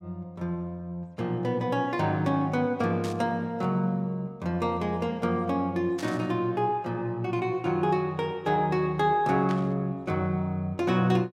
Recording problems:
static burst; at 3 s, at 6 s and at 9.5 s; peak -9 dB vs average level

